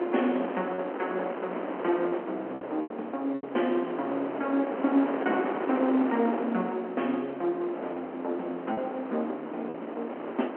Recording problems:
phone line; 220 Hz to 3.3 kHz, G.711
wind on the microphone; below 880 Hz, SNR 4 dB
packet loss; 3% of the sound replaced, filled with repeated pitch periods

